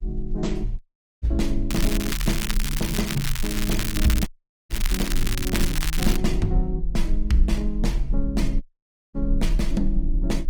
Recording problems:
codec artefacts; Opus, log-spectral distance 2 dB, nothing above 19 kHz
low-frequency rumble; below 40 Hz, strongest tone 22 Hz, SNR 2 dB
dropout; at 1 s, at 4.5 s and at 8.5 s for 0.5 s
crackling; from 1.5 to 6 s; loose cable, SNR 3 dB

